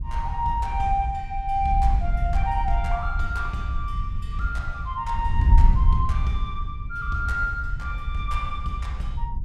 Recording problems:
wind noise; below 70 Hz, SNR 0 dB

